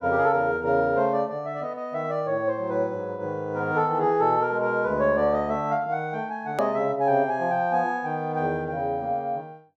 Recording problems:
edit click; at 6.5 s

